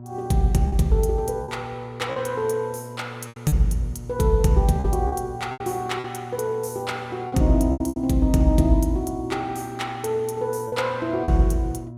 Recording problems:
hum; 60 Hz, harmonics up to 960 Hz, SNR 15 dB
lost packets; 6% of the sound replaced, filled with repeated pitch periods

